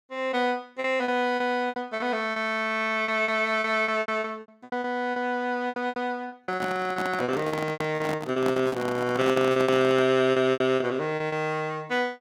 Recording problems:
lost packets; 16% of the sound replaced, filled with repeated pitch periods
handling noise; from 6.5 to 10 s; peak -3 dB vs average level

